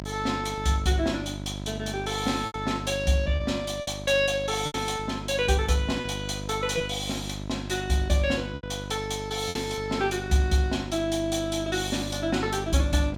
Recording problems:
electrical hum; 50 Hz, harmonics up to 1.4 kHz, SNR 9 dB
packet loss; 4% of the sound replaced, filled with repeated pitch periods

